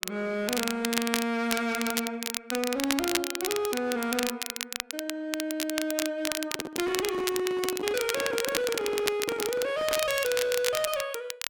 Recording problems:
distorted audio; hard clipping, signal-to-distortion ratio 11 dB
crackle; vinyl, SNR 3 dB
handling noise; from 6.5 to 10 s; peak -2 dB vs average level

